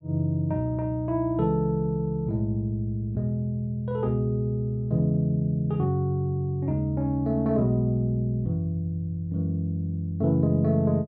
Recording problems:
none

